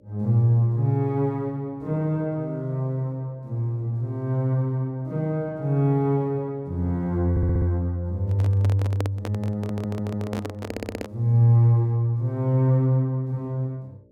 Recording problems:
electrical hum; 60 Hz, harmonics up to 600 Hz, SNR 33 dB
audio stuttering; at 7.5 s, at 9.5 s and at 11 s
handling noise; from 8.5 to 11 s; peak -4 dB vs average level

